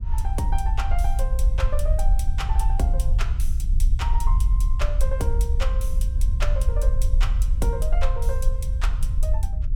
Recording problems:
low-frequency rumble; below 56 Hz, SNR -9 dB

